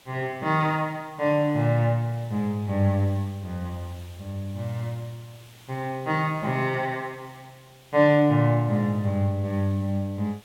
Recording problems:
background hiss; SNR 26 dB

